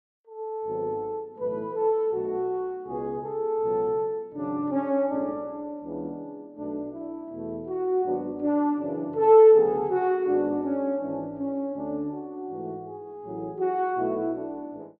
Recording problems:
none

